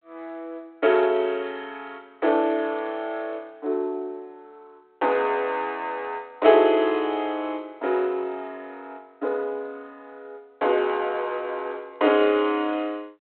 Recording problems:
phone line; 280 Hz to 4 kHz, G.726

